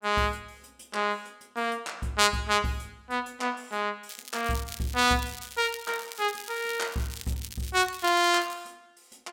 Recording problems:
crackling; from 4 to 8.5 s; loose cable, SNR 13 dB

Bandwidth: 16.5 kHz